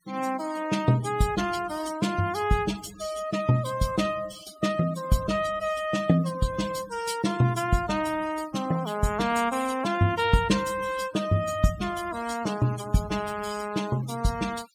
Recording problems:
noise reduction artefacts; signal-to-artefact ratio 15 dB

